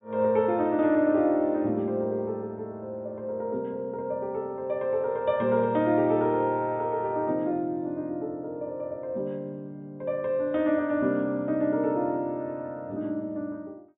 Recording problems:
low-pass filter; nothing above 4 kHz

